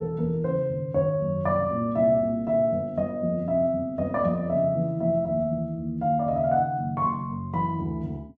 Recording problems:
none

